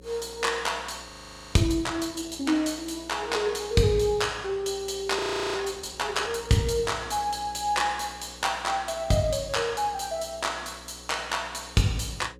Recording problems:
electrical hum; 60 Hz, harmonics up to 540 Hz, SNR 22 dB
audio freezing; at 1 s and at 5 s

